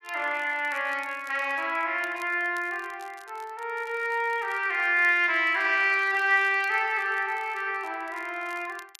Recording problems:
crackling; vinyl, SNR 29 dB

